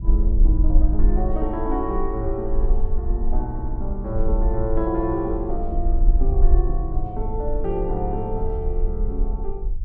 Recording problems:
rumble; below 44 Hz, strongest tone 20 Hz, SNR -2 dB

